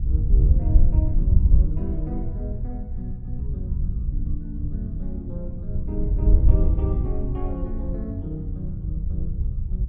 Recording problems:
wind on the microphone; below 74 Hz, SNR -9 dB

